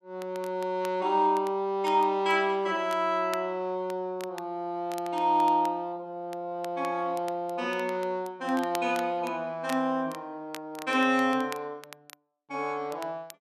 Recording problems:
crackling; vinyl, SNR 19 dB

